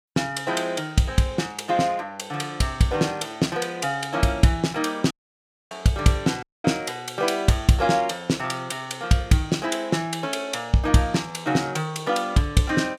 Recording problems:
audio cutting out; at 5 s for 0.5 s and at 6.5 s

